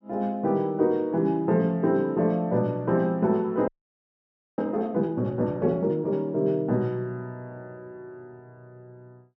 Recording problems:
frozen audio; at 3.5 s for 1 s

